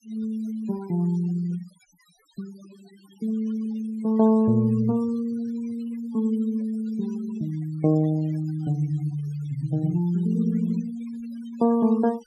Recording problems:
denoising artefacts; signal-to-artefact ratio 22 dB

